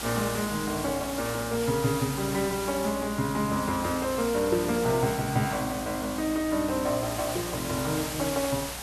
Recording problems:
mains hum; 60 Hz, harmonics up to 600 Hz, SNR 18 dB
background hiss; SNR 7 dB

